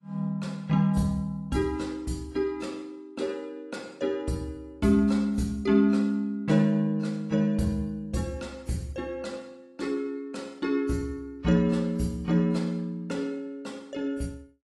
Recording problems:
lossy codec; AAC, log-spectral distance 2 dB

